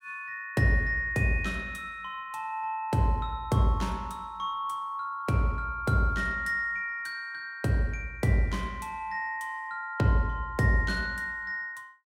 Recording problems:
none

